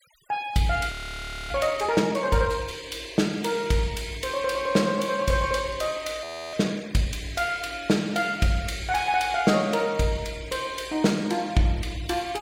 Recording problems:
noise reduction artefacts; signal-to-artefact ratio 21 dB
frozen audio; at 1 s for 0.5 s and at 6 s

